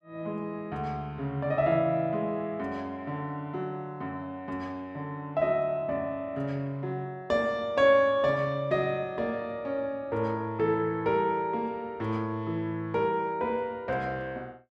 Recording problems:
none

